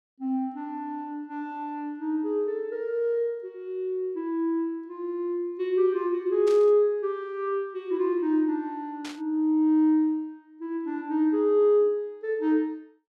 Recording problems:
burst of static; at 6.5 s and at 9 s; peak -9 dB vs average level

